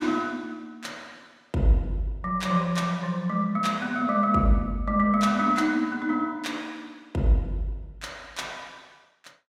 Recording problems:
none

